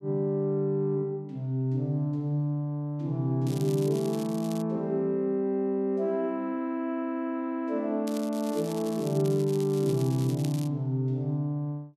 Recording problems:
crackle; from 3.5 to 4.5 s and from 8 to 11 s; loose cable, SNR 17 dB

